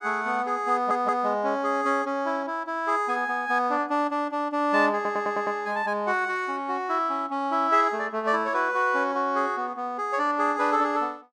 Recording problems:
audio stuttering; at 0.5 s and at 5 s

